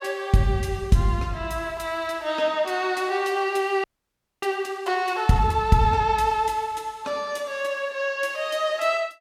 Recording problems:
frozen audio; at 4 s for 0.5 s

